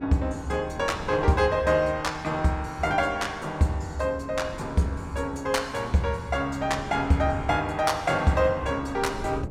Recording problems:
wind on the microphone; below 310 Hz, SNR 17 dB

